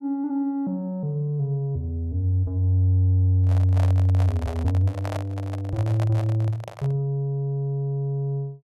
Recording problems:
handling noise; from 3.5 to 7 s; peak -5 dB vs average level

